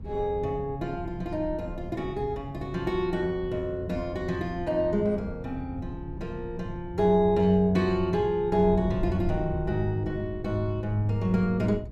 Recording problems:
wind noise; below 120 Hz, SNR 12 dB

